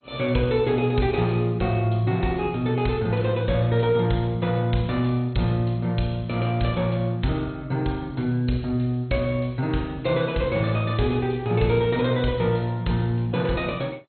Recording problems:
codec artefacts; MP2, log-spectral distance 4 dB, nothing above 4.2 kHz

